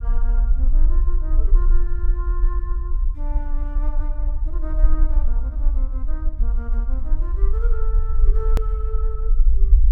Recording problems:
low-frequency rumble; below 44 Hz, strongest tone 22 Hz, SNR -16 dB
click at an edit; at 8.5 s

